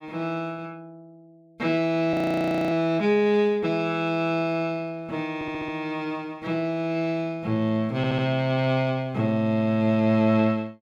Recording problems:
audio freezing; at 2 s for 0.5 s
audio stuttering; at 5.5 s and at 8 s

